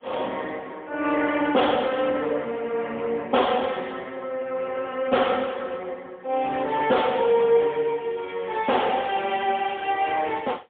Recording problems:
phone line; 260 Hz to 3.4 kHz, AMR-NB, then MP3
distorted audio; soft clipping, signal-to-distortion ratio 11 dB

